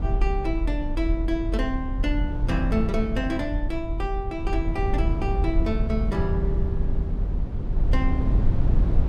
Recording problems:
low-frequency rumble; below 76 Hz, SNR -2 dB

